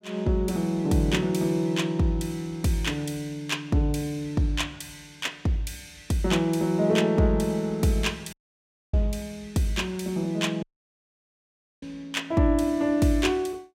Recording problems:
dropout; at 8.5 s for 0.5 s and at 11 s for 1 s

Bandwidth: 16 kHz